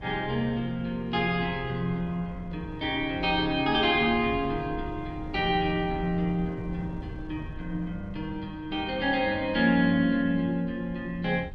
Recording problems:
wind on the microphone; below 160 Hz, SNR 15 dB

